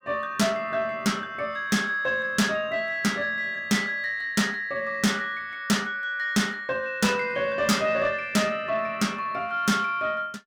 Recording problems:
distortion; soft clipping, signal-to-distortion ratio 12 dB

